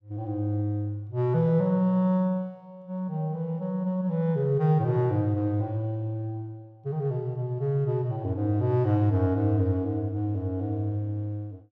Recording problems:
none

